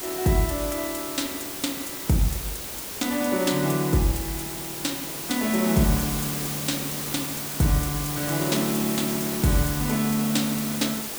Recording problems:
background hiss; slope -2 dB per octave, SNR 4 dB

